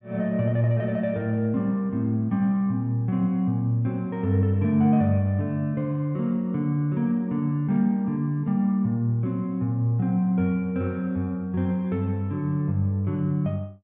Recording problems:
none

